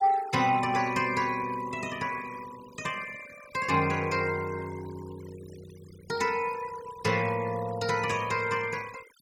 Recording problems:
denoising artefacts; signal-to-artefact ratio 17 dB

